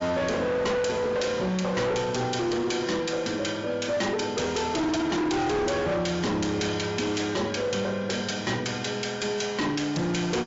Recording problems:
treble cut off; nothing above 7.3 kHz
codec artefacts; MP3, log-spectral distance 4 dB
distortion; hard clipping, signal-to-distortion ratio 6 dB

